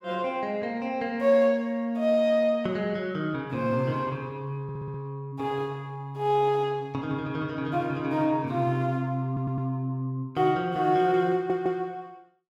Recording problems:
audio stuttering; at 4.5 s, at 9.5 s and at 11 s

